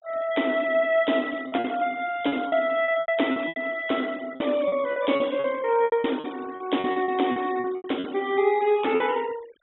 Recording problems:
treble cut off; nothing above 3.6 kHz
noise reduction artefacts; signal-to-artefact ratio 20 dB
lost packets; 12% of the sound replaced, filled with repeated pitch periods

